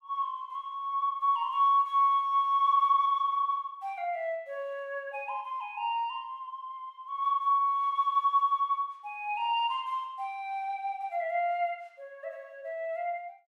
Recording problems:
none

